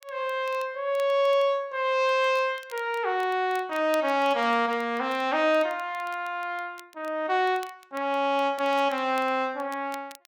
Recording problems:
crackling; vinyl, SNR 25 dB

